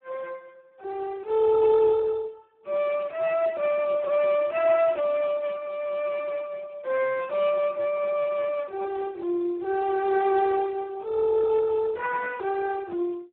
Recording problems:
phone line; 280 Hz to 2.3 kHz, Speex

